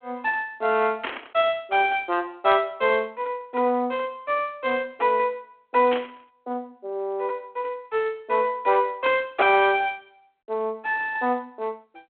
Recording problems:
telephone audio; 220 Hz to 3.4 kHz, G.726
burst of static; at 1 s and at 6 s; peak -1 dB vs average level

